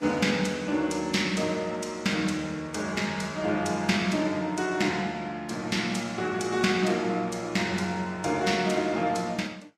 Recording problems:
lossy compression; Vorbis, log-spectral distance 3 dB, nothing above 13.5 kHz

